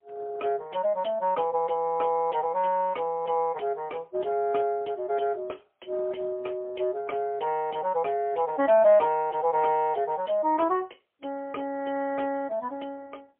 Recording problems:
phone line; 300 Hz to 3.3 kHz, AMR-NB, then MP3

